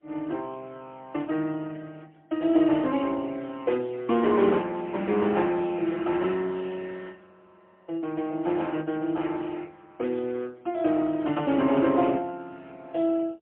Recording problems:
phone line; 170 Hz to 3.4 kHz, AMR-NB, then MP3

